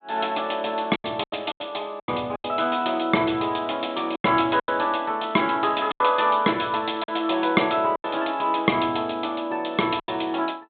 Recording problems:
low-pass filter; nothing above 4 kHz
packet loss; 8% of the sound replaced, filled with silence

